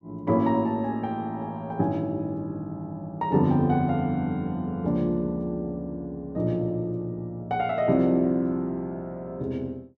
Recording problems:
none

